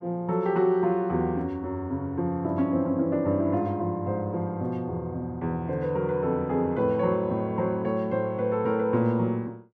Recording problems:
none

